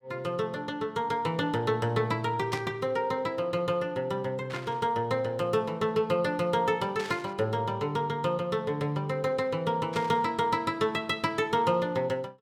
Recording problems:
static burst; 4 times, first at 2.5 s; peak -5 dB vs average level

